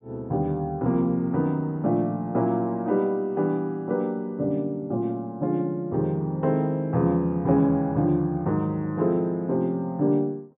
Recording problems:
low-pass filter; nothing above 4 kHz

